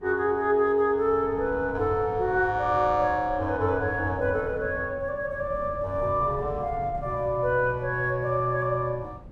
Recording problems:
wind noise; below 210 Hz, SNR 16 dB

